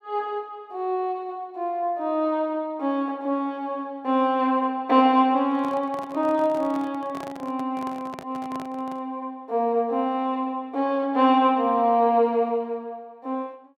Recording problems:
handling noise; from 5.5 to 9 s; peak -10 dB vs average level

